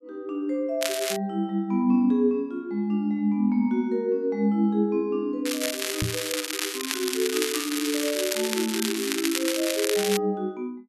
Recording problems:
crackling; at 1 s and from 5.5 to 10 s; loose cable, SNR 3 dB
microphone thump; at 6 s; peak +1 dB vs average level

